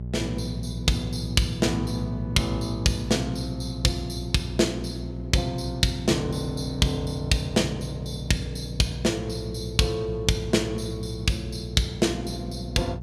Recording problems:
hum; 60 Hz, harmonics up to 600 Hz, SNR 8 dB

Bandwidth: 15.5 kHz